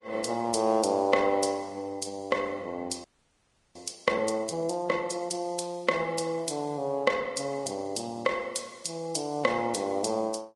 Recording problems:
codec artefacts; Vorbis, log-spectral distance 4 dB, nothing above 10.4 kHz
frozen audio; at 3 s for 0.5 s

